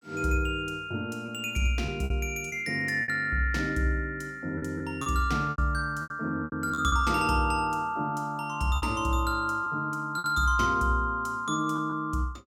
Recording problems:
packet loss; 7% of the sound replaced, filled with repeated pitch periods

